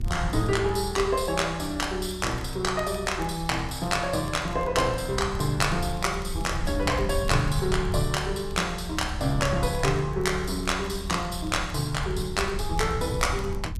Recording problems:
low-frequency rumble; below 92 Hz, SNR 8 dB
crackling; vinyl, SNR 27 dB

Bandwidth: 14.5 kHz